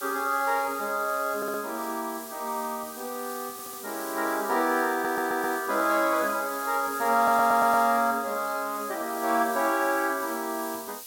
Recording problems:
background hiss; SNR 13 dB
audio stuttering; 4 times, first at 1.5 s

